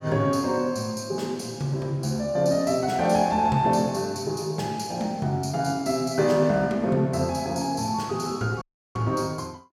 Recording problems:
dropout; at 8.5 s

